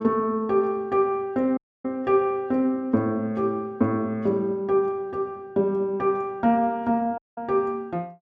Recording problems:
audio cutting out; at 1.5 s and at 7 s

